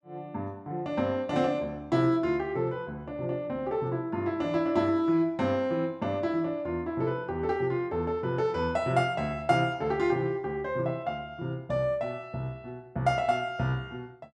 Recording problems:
none

